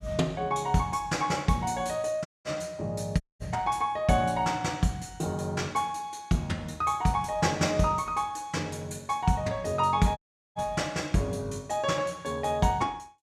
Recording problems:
audio cutting out; at 2.5 s, at 3 s and at 10 s

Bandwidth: 14.5 kHz